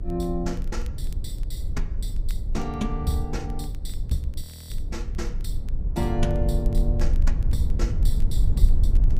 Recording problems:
electrical hum; 60 Hz, harmonics up to 600 Hz, SNR 16 dB
low-frequency rumble; below 56 Hz, SNR -3 dB
crackle; vinyl, SNR 26 dB
frozen audio; at 4.5 s

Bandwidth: 15.5 kHz